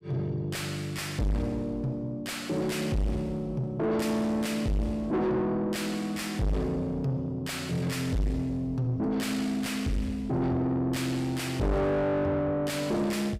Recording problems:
distorted audio; soft clipping, signal-to-distortion ratio 6 dB

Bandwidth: 15.5 kHz